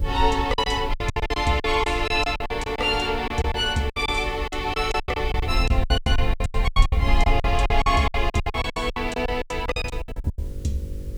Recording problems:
hum; 50 Hz, harmonics up to 550 Hz, SNR 17 dB
hiss; slope -2 dB per octave, SNR 28 dB
wind on the microphone; below 68 Hz, SNR 5 dB
packet loss; 21% of the sound replaced, filled with silence

